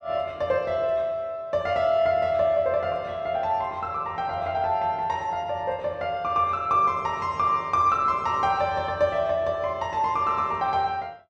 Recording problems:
none

